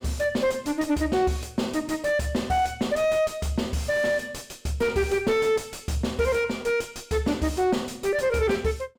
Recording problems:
distorted audio; soft clipping, signal-to-distortion ratio 7 dB

